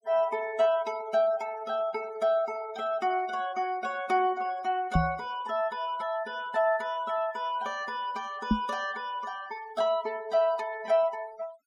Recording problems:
noise reduction artefacts; signal-to-artefact ratio 21 dB
knock on the microphone; at 5 s and at 8.5 s; peak +8 dB vs average level

